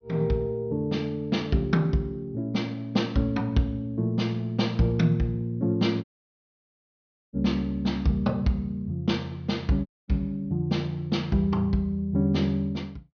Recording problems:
treble missing; nothing above 6.1 kHz
audio cutting out; at 6 s for 1.5 s and at 10 s

